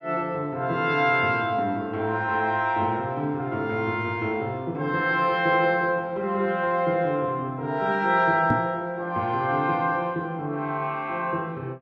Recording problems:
knock on the microphone; at 8.5 s; peak +4 dB vs average level

